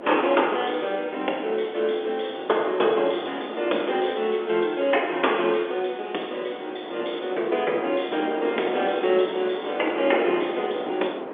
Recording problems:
telephone audio; 280 Hz to 3.5 kHz, G.711
wind noise; below 740 Hz, SNR 10 dB

